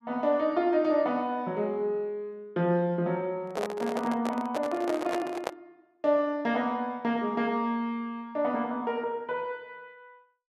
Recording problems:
microphone handling noise; from 3.5 to 5.5 s; peak +1 dB vs average level

